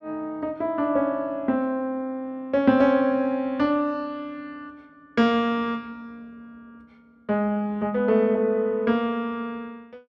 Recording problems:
none

